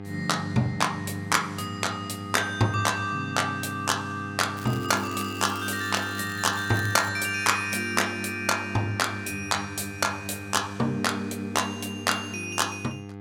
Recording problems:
mains hum; 50 Hz, harmonics up to 1.6 kHz, SNR 11 dB
crackle; from 4.5 to 7 s; loose cable, SNR 17 dB

